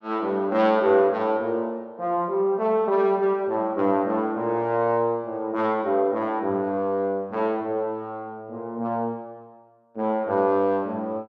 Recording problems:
none

